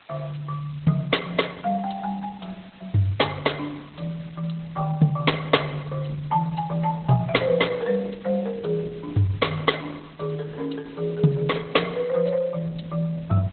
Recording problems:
codec artefacts; Opus, log-spectral distance 12 dB, nothing above 4 kHz
hiss; SNR 27 dB

